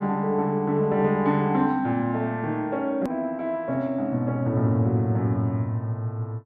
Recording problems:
hard cut with a click; at 3 s

